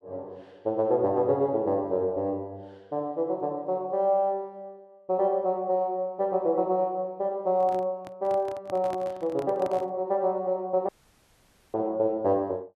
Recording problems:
microphone handling noise; from 7.5 to 10 s; peak -9 dB vs average level
audio cutting out; at 11 s for 1 s

